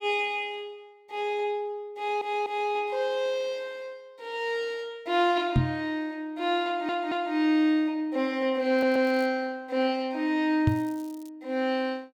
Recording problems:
audio stuttering; at 2 s, at 6.5 s and at 8.5 s
microphone thump; at 5.5 s and at 11 s; peak +7 dB vs average level
crackle; at 9 s and at 11 s; loose cable, SNR 27 dB

